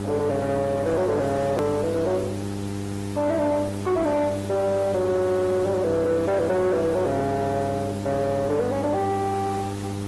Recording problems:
lossy compression; Opus, then AAC, log-spectral distance 5 dB, nothing above 12 kHz
distortion; soft clipping, signal-to-distortion ratio 10 dB
hum; 50 Hz, harmonics up to 1.3 kHz, SNR 8 dB
hiss; SNR 15 dB
edit click; at 1.5 s

